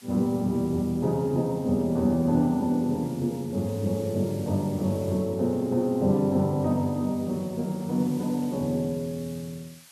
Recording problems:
hiss; slope +3 dB per octave, SNR 23 dB

